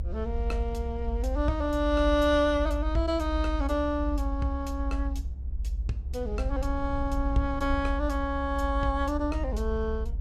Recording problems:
rumble; below 66 Hz, strongest tone 50 Hz, SNR 3 dB

